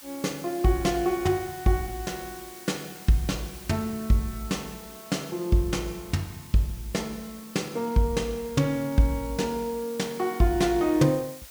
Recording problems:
background hiss; SNR 17 dB

